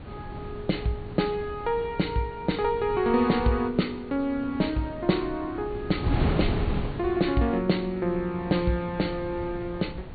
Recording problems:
treble missing; nothing above 4.5 kHz
wind on the microphone; below 300 Hz, SNR 8 dB

